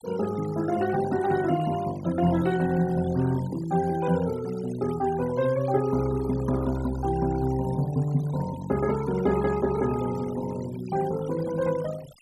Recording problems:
denoising artefacts; signal-to-artefact ratio 17 dB

